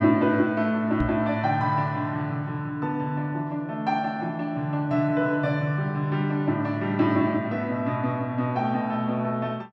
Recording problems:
microphone bump; at 1 s; peak +3 dB vs average level

